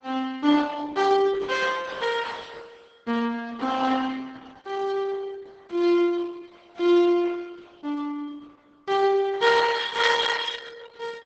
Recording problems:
lossy codec; Opus, then Opus, log-spectral distance 5 dB, nothing above 8 kHz

